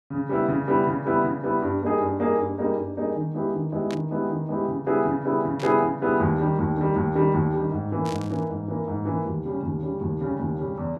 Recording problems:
static burst; at 4 s, at 5.5 s and at 8 s; peak -10 dB vs average level

